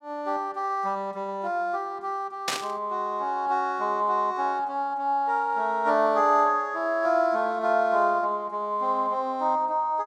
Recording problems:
burst of static; at 2.5 s; peak +3 dB vs average level

